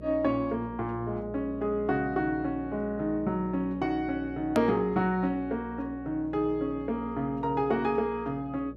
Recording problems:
electrical hum; 60 Hz, harmonics up to 600 Hz, SNR 15 dB
edit click; at 4.5 s

